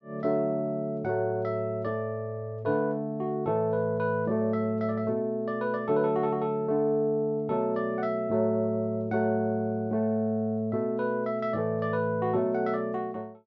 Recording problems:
none

